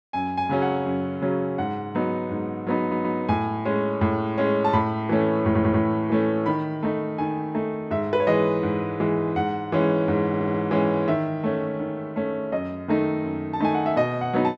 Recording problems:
audio stuttering; at 3 s, at 5.5 s and at 10 s

